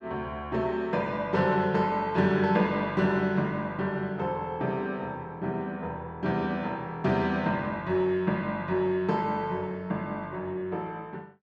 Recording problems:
none

